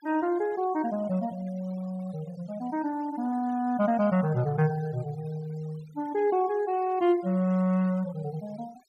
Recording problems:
denoising artefacts; signal-to-artefact ratio 24 dB

